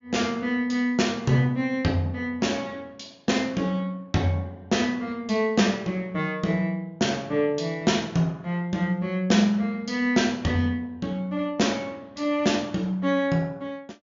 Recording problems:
treble cut off; nothing above 7.1 kHz

